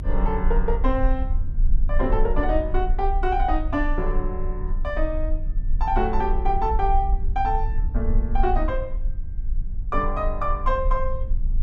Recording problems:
rumble; below 44 Hz, strongest tone 28 Hz, SNR 1 dB

